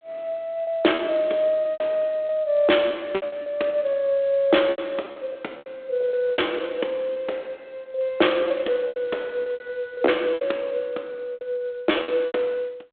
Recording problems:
telephone audio; 260 Hz to 3.6 kHz, G.726
lost packets; 12% of the sound replaced, filled with repeated pitch periods

